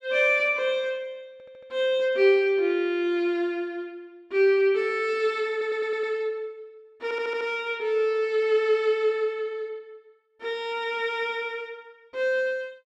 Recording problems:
audio stuttering; at 1.5 s, at 5.5 s and at 7 s

